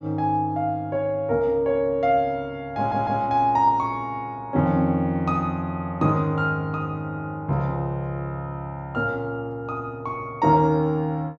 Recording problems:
treble cut off; nothing above 8 kHz
stutter; at 3 s

